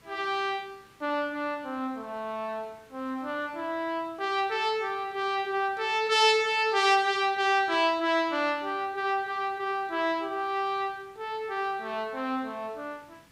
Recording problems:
background hiss; SNR 30 dB

